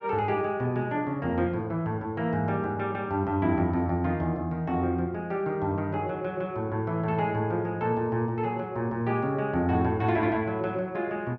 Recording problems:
none

